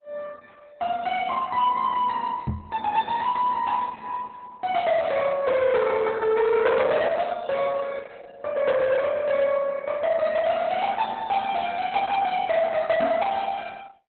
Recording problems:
codec artefacts; Opus, log-spectral distance 3 dB, nothing above 4 kHz
distortion; soft clipping, signal-to-distortion ratio 11 dB
knock on the microphone; at 2.5 s and at 13 s; peak +1 dB vs average level

